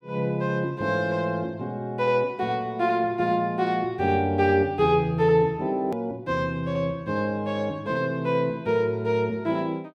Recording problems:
click at an edit; at 6 s

